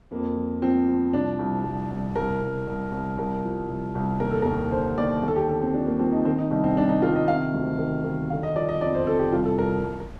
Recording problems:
wind noise; below 250 Hz, SNR 21 dB

